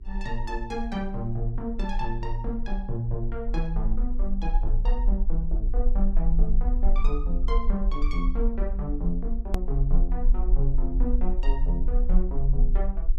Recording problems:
mains hum; 50 Hz, harmonics up to 400 Hz, SNR 22 dB
low-frequency rumble; below 40 Hz, strongest tone 24 Hz, SNR -4 dB
click at an edit; at 9.5 s

